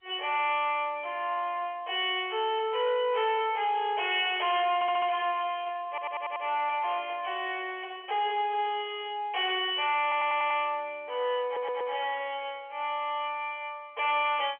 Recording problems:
telephone audio; 320 Hz to 3.3 kHz, G.711
distortion; soft clipping, signal-to-distortion ratio 10 dB
stutter; 4 times, first at 5 s

